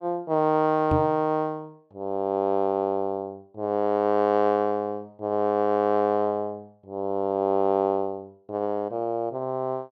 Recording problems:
microphone thump; at 1 s; peak +3 dB vs average level

